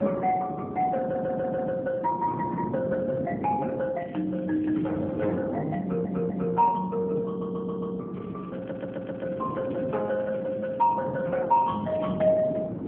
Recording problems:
telephone audio; 190 Hz to 2.6 kHz, AMR-NB
wind noise; below 390 Hz, SNR 7 dB
audio stuttering; 4 times, first at 1 s
crackling; from 4 to 5.5 s, from 8 to 11 s and at 12 s; loose cable, SNR 27 dB

